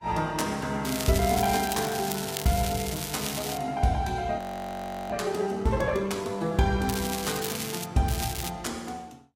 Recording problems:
lossy compression; Vorbis, log-spectral distance 6 dB, nothing above 16 kHz
crackling; from 1 to 3.5 s, at 7 s and at 8 s; loose cable, SNR 6 dB
frozen audio; at 4.5 s for 0.5 s

